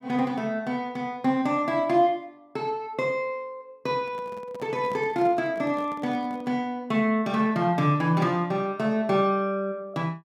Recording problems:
microphone handling noise; from 4 to 6.5 s; peak -9 dB vs average level

